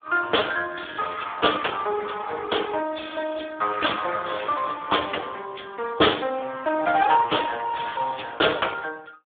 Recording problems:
phone line; 340 Hz to 3.5 kHz, Speex

